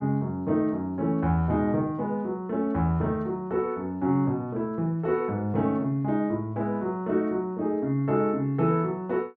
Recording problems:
none

